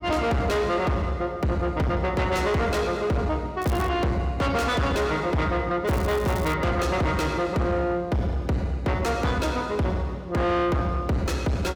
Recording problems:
distortion; soft clipping, signal-to-distortion ratio 7 dB
crackle; at 3.5 s and at 6 s; loose cable, SNR 19 dB

